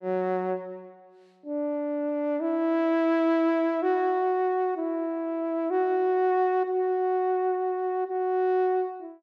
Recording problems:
none

